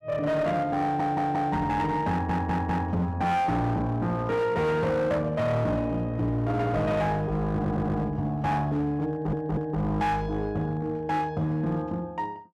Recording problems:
distortion; hard clipping, uneven, signal-to-distortion ratio 10 dB
audio stuttering; 4 times, first at 1 s

